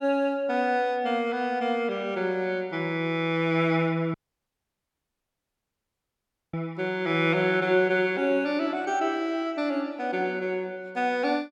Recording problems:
audio cutting out; at 4 s for 2.5 s

